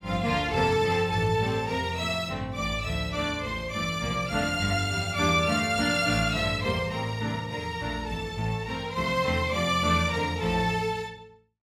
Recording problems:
none

